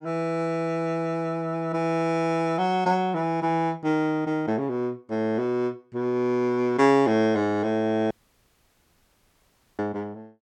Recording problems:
audio cutting out; at 8 s for 1.5 s

